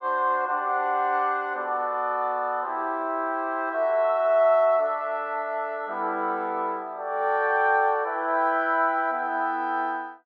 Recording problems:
none

